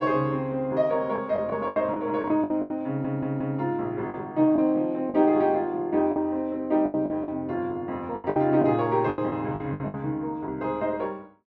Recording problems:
packet loss; 10% of the sound replaced, filled with the last packet
audio stuttering; at 3 s

